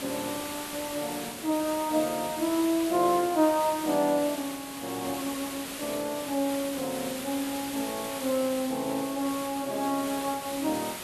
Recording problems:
hiss; slope -2 dB per octave, SNR 8 dB

